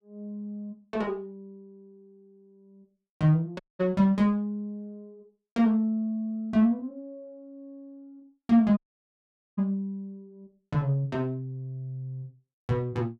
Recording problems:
dropout; at 3.5 s and at 9 s for 1 s

